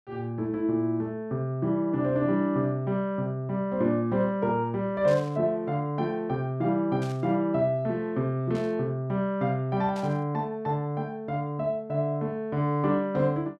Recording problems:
static burst; 4 times, first at 5 s; peak -13 dB vs average level

